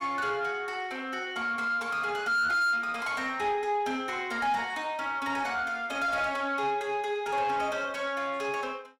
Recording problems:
distorted audio; soft clipping, signal-to-distortion ratio 7 dB

